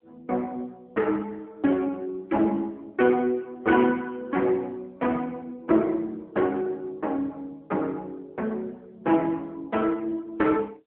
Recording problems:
phone line; 240 Hz to 2.9 kHz, AMR-NB

